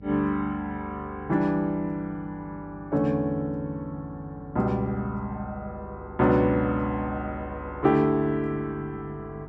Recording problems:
electrical hum; 50 Hz, harmonics up to 500 Hz, SNR 19 dB

